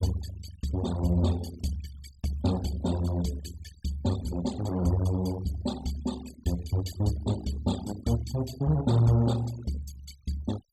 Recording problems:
denoising artefacts; signal-to-artefact ratio 14 dB

